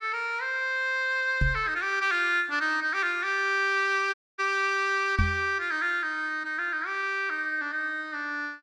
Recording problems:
microphone bump; at 1.5 s and at 5 s; peak +3 dB vs average level
audio cutting out; at 4 s

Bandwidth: 14.5 kHz